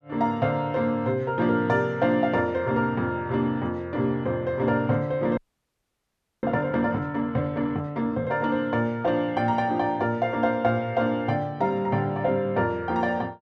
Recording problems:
frozen audio; at 5.5 s for 1 s

